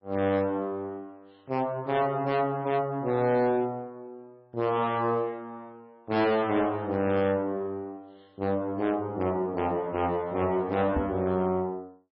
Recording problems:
lossy compression; MP3, log-spectral distance 2 dB, nothing above 4.8 kHz
distortion; hard clipping, signal-to-distortion ratio 11 dB
microphone thump; at 11 s; peak +1 dB vs average level

